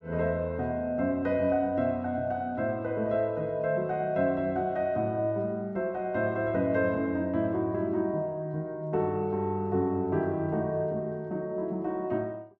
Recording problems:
none

